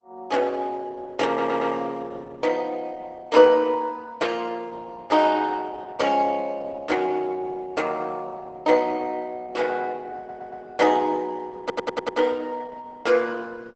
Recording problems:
codec artefacts; Opus, log-spectral distance 3 dB, nothing above 8 kHz
audio stuttering; at 1.5 s, at 10 s and at 12 s

